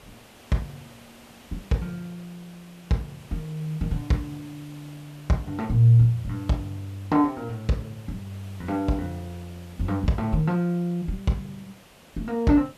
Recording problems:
background hiss; slope -4 dB per octave, SNR 24 dB

